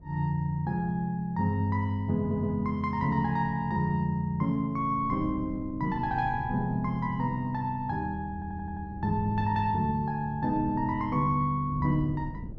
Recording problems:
wind noise; below 200 Hz, SNR 15 dB
stutter; at 2 s and at 8.5 s

